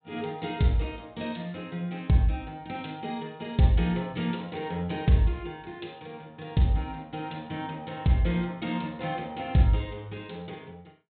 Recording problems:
treble cut off; nothing above 4 kHz

